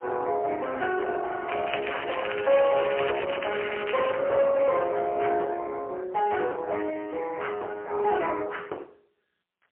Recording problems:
phone line; 320 Hz to 3.1 kHz, AMR-NB, then MP3
distorted audio; soft clipping, signal-to-distortion ratio 10 dB
crackle; from 1.5 to 4 s; loose cable, SNR 9 dB

